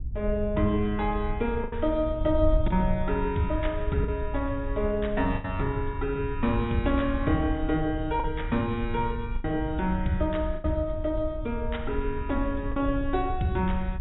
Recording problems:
treble missing; nothing above 3.8 kHz
wind noise; below 74 Hz, SNR 6 dB
packet loss; 3% of the sound replaced, filled with the last packet

